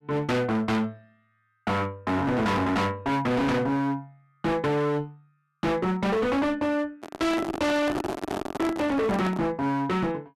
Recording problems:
distortion; hard clipping, signal-to-distortion ratio 6 dB
handling noise; from 7 to 9.5 s; peak +1 dB vs average level

